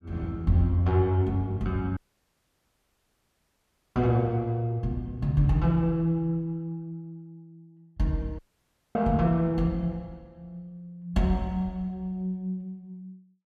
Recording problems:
dropout; at 2 s for 2 s and at 8.5 s for 0.5 s

